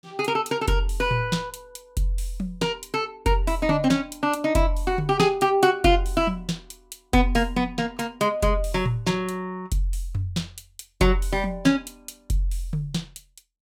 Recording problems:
none

